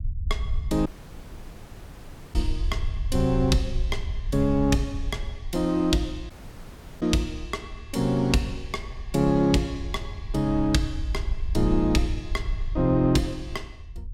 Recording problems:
rumble; below 68 Hz, SNR 7 dB
audio cutting out; at 1 s for 1.5 s and at 6.5 s for 0.5 s

